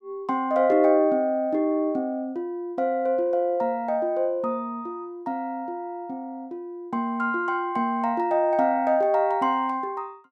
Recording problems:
none

